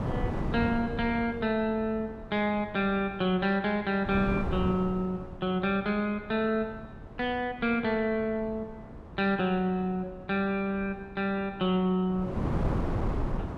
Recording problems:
wind on the microphone; below 350 Hz, SNR 8 dB

